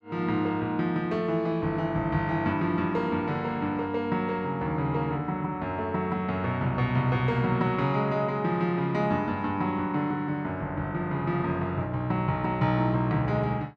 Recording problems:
none

